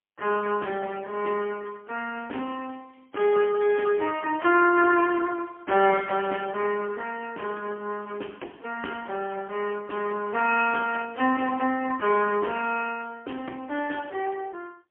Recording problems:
phone line; 260 Hz to 3.2 kHz, AMR-NB, then MP3

